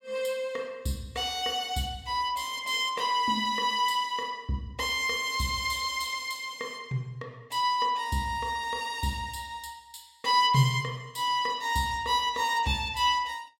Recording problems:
none

